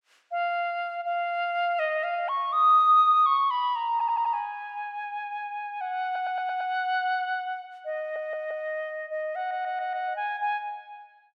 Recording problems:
audio stuttering; 4 times, first at 4 s

